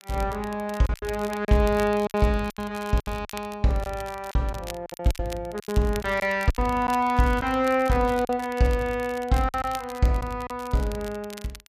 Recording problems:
crackle; vinyl, SNR 19 dB
lost packets; 9% of the sound replaced, filled with silence

